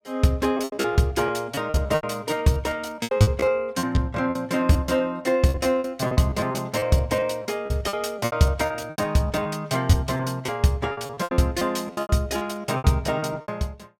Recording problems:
lost packets; 17% of the sound replaced, filled with repeated pitch periods

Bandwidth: 17.5 kHz